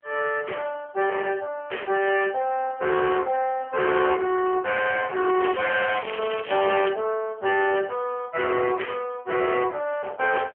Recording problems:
telephone audio; 300 Hz to 3.3 kHz, AMR-NB
distorted audio; soft clipping, signal-to-distortion ratio 10 dB
crackling; from 5.5 to 7 s; loose cable, SNR 12 dB

